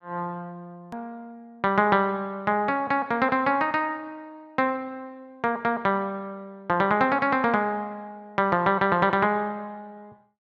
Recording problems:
hard cut with a click; at 1 s

